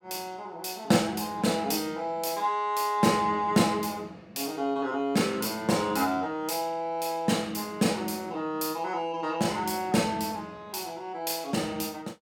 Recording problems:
none

